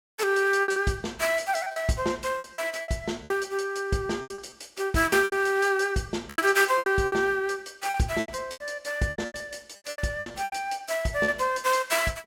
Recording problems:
lost packets; 13% of the sound replaced, filled with repeated pitch periods

